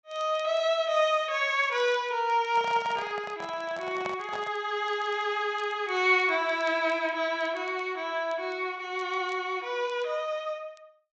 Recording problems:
treble missing; nothing above 8 kHz
crackling; vinyl, SNR 30 dB
microphone handling noise; from 2.5 to 4.5 s; peak -3 dB vs average level

